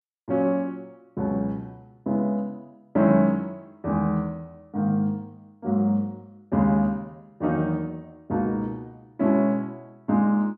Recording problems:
none

